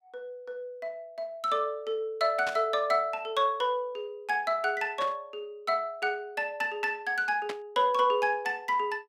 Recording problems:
burst of static; at 2.5 s, at 5 s and at 7.5 s; peak -4 dB vs average level

